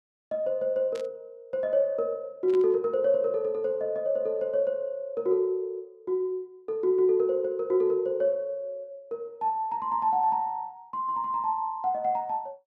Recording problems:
burst of static; at 1 s and at 2.5 s; peak -14 dB vs average level

